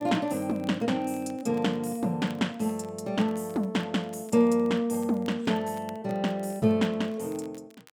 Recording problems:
crackle; vinyl, SNR 29 dB

